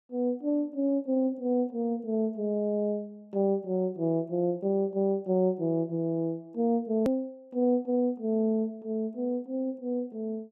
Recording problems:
hard cut with a click; at 7 s

